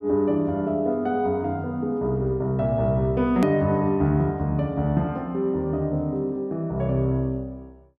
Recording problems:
edit click; at 3.5 s

